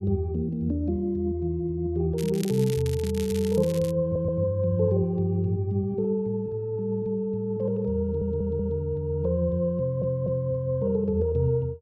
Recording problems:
crackle; from 2 to 4 s; loose cable, SNR 15 dB
stutter; at 4 s, at 8 s and at 10 s

